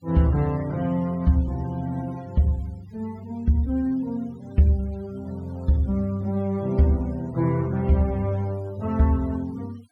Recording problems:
noise reduction artefacts; signal-to-artefact ratio 27 dB

